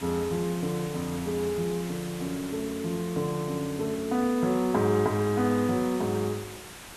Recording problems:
background hiss; slope -2 dB per octave, SNR 13 dB

